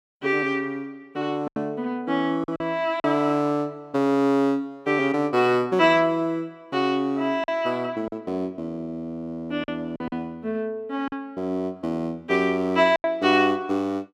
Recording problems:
lost packets; 4% of the sound replaced, filled with silence

